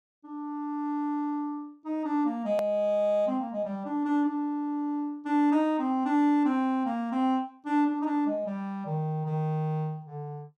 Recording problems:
hard cut with a click; at 2.5 s

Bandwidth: 14.5 kHz